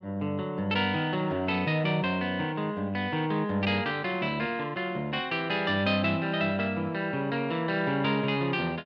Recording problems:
none

